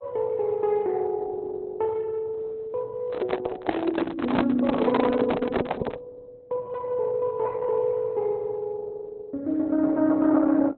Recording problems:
lossy codec; Opus, log-spectral distance 3 dB
handling noise; from 3 to 6 s; peak +5 dB vs average level

